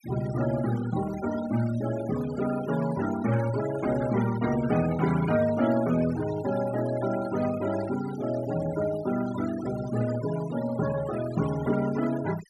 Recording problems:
denoising artefacts; signal-to-artefact ratio 13 dB

